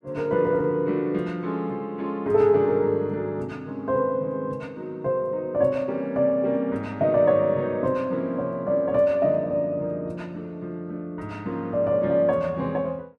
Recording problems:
none

